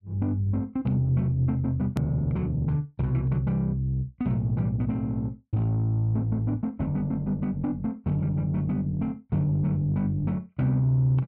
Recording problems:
hard cut with a click; at 2 s

